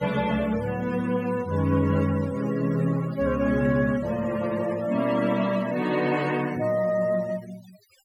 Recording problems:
denoising artefacts; signal-to-artefact ratio 18 dB

